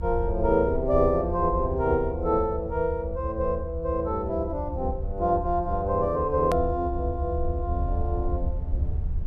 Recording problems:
low-frequency rumble; below 78 Hz, SNR 6 dB
click at an edit; at 6.5 s

